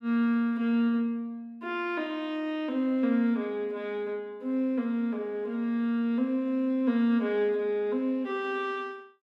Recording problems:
none

